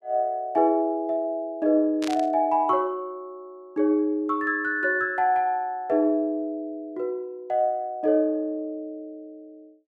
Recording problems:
static burst; at 2 s; peak -6 dB vs average level

